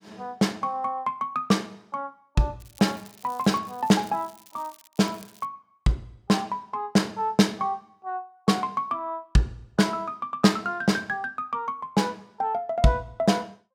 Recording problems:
crackle; from 2.5 to 5.5 s; loose cable, SNR 24 dB

